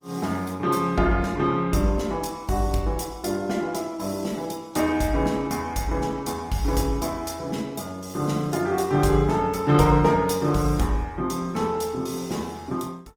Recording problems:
lossy compression; Opus, log-spectral distance 4 dB, nothing above 19 kHz

